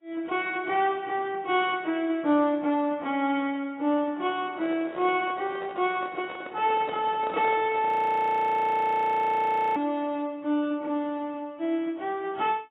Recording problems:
codec artefacts; AAC, log-spectral distance 2 dB
microphone handling noise; from 4.5 to 8 s; peak -5 dB vs average level
audio freezing; at 8 s for 2 s

